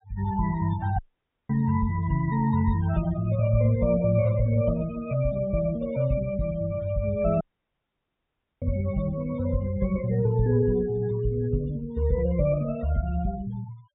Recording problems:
low-pass filter; nothing above 4 kHz
noise reduction artefacts; signal-to-artefact ratio 20 dB
dropout; at 1 s for 0.5 s and at 7.5 s for 1 s

